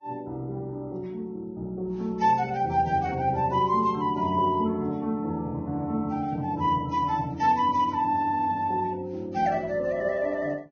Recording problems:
lossy compression; Vorbis, log-spectral distance 2 dB, nothing above 6.3 kHz

